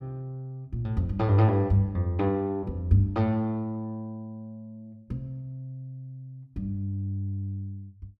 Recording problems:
none

